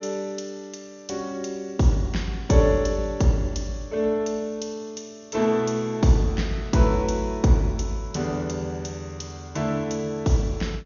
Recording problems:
treble missing; nothing above 6.8 kHz

